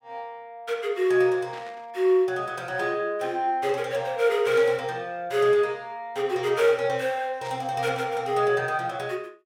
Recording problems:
static burst; at 1.5 s, at 4.5 s and at 7.5 s; peak -14 dB vs average level

